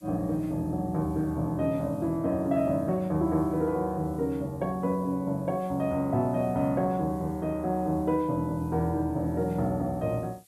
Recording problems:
background hiss; slope +2 dB per octave, SNR 30 dB

